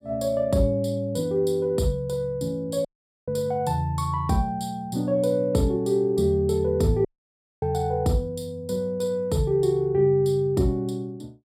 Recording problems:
audio cutting out; at 3 s and at 7 s for 0.5 s

